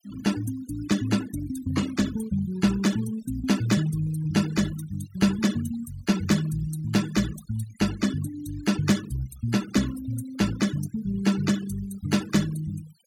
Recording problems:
noise reduction artefacts; signal-to-artefact ratio 13 dB

